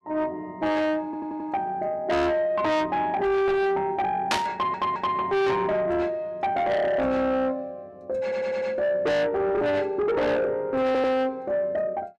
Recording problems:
distortion; soft clipping, signal-to-distortion ratio 6 dB
audio stuttering; 4 times, first at 1 s
static burst; at 4.5 s; peak +5 dB vs average level

